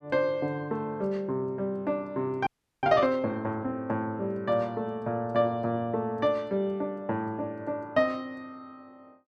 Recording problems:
frozen audio; at 2.5 s

